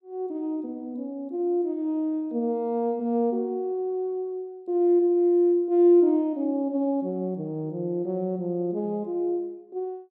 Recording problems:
none

